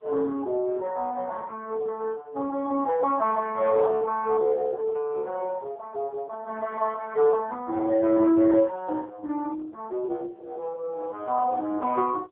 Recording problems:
telephone audio; 280 Hz to 2.2 kHz, AMR-NB, then MP3

